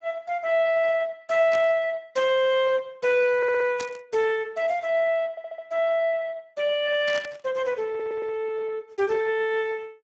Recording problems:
codec artefacts; Speex, log-spectral distance 2 dB
static burst; at 1.5 s, at 4 s and at 7 s; peak -4 dB vs average level
audio stuttering; at 3.5 s, at 5.5 s and at 8 s

